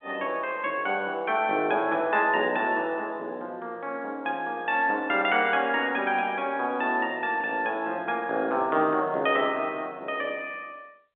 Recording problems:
phone line; 220 Hz to 3.7 kHz, G.711

